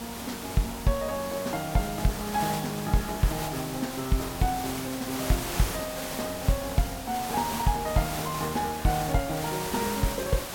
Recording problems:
hiss; slope -3 dB per octave, SNR 5 dB

